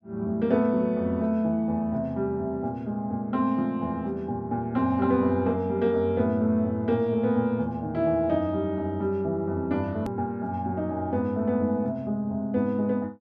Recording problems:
hard cut with a click; at 10 s

